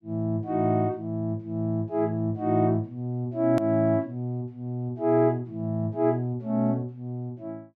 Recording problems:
hard cut with a click; at 3.5 s

